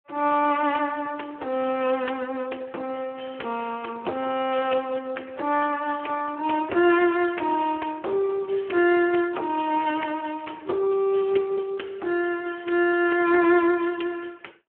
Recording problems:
telephone audio; 260 Hz to 2.9 kHz, Speex
crackling; from 8 to 11 s; loose cable, SNR 29 dB

